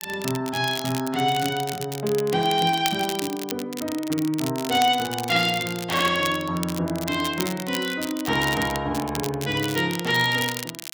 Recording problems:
crackling; vinyl, SNR 10 dB

